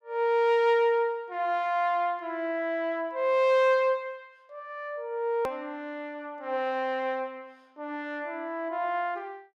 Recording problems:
click at an edit; at 5.5 s

